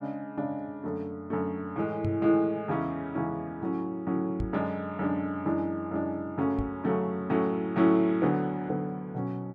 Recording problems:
microphone thump; at 2 s, at 4.5 s and at 6.5 s; peak 0 dB vs average level

